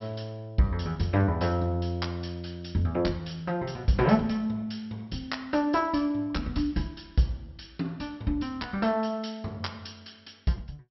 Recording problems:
treble missing; nothing above 5.6 kHz

